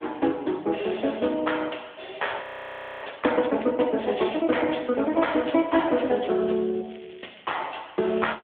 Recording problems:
phone line; 240 Hz to 3.5 kHz, AMR-NB
frozen audio; at 2.5 s for 0.5 s
crackling; from 5 to 8 s; loose cable, SNR 25 dB

